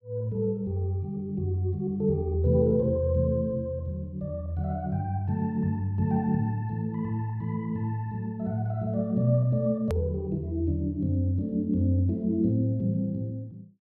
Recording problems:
click at an edit; at 10 s

